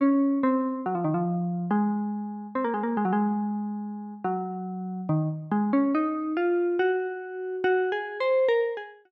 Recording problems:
none

